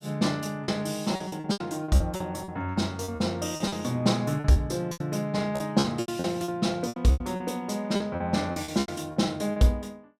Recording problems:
packet loss; 15% of the sound replaced, filled with repeated pitch periods

